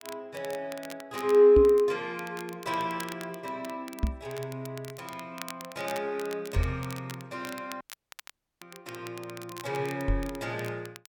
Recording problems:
crackling; vinyl, SNR 17 dB
knock on the microphone; 4 times, first at 1.5 s; peak +5 dB vs average level
dropout; at 8 s for 1 s

